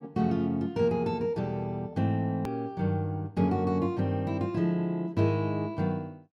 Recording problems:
click at an edit; at 2.5 s

